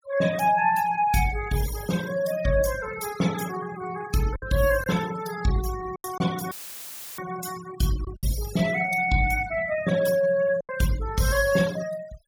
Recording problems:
denoising artefacts; signal-to-artefact ratio 13 dB
lost packets; 3% of the sound replaced, filled with silence
dropout; at 6.5 s for 0.5 s; filled with static

